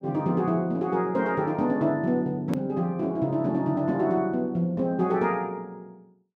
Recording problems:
hard cut with a click; at 2.5 s

